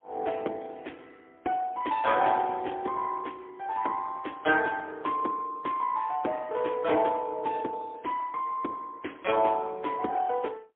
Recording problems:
phone line; 260 Hz to 3.5 kHz, AMR-NB, then MP3

